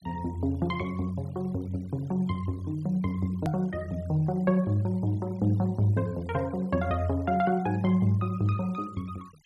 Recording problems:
denoising artefacts; signal-to-artefact ratio 28 dB
click at an edit; at 3.5 s

